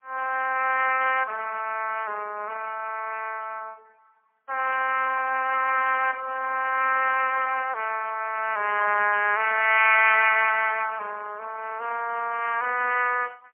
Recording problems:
phone line; 280 Hz to 3.1 kHz, AMR-NB, then MP3

